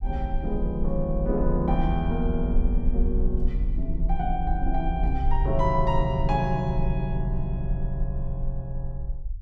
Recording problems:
rumble; below 50 Hz, strongest tone 22 Hz, SNR 2 dB

